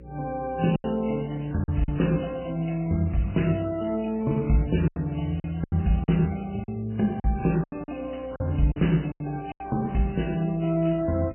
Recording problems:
lossy codec; MP3, then AAC, log-spectral distance 5 dB, nothing above 3 kHz
electrical hum; 60 Hz, harmonics up to 540 Hz, SNR 21 dB
packet loss; 7% of the sound replaced, filled with silence

